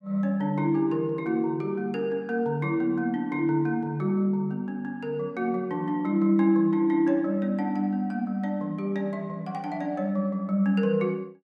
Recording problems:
none

